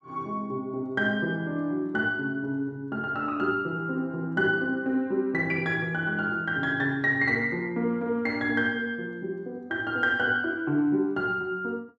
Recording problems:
none

